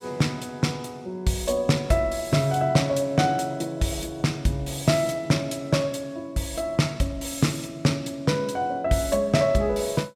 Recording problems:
none

